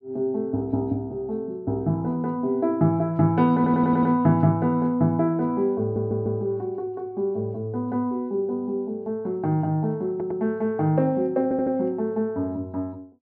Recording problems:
stutter; 4 times, first at 3.5 s

